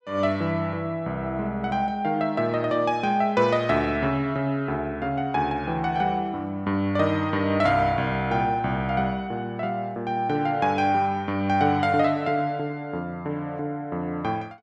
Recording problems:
none

